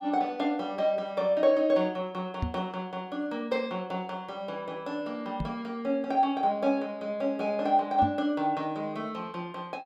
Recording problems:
microphone thump; at 2.5 s, at 5.5 s and at 8 s; peak +2 dB vs average level

